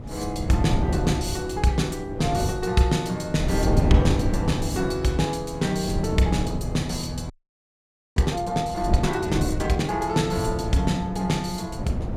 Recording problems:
wind noise; below 220 Hz, SNR 4 dB
frozen audio; at 7.5 s for 1 s

